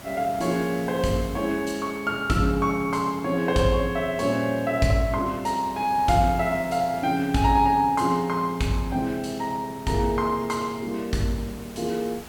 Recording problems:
background hiss; slope -4 dB per octave, SNR 19 dB

